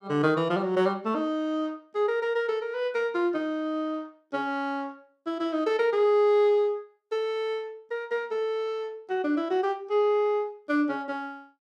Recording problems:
none

